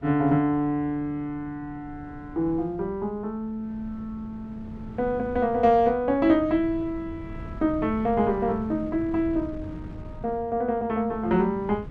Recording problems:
wind noise; below 220 Hz, SNR 16 dB

